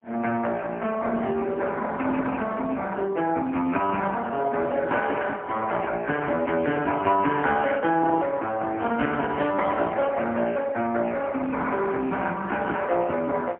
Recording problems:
telephone audio; 240 Hz to 3.2 kHz, AMR-NB, then MP3

